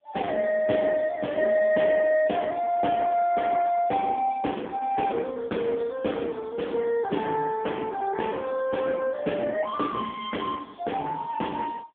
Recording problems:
phone line; 220 Hz to 3.5 kHz, AMR-NB

